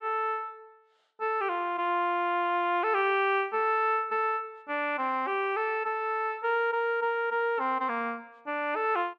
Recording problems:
none

